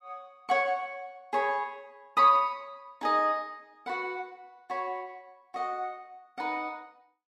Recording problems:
none

